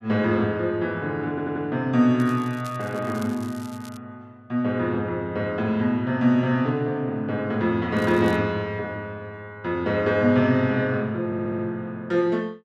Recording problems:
stutter; at 1.5 s and at 11 s
crackling; from 2 to 4 s and at 8 s; loose cable, SNR 24 dB

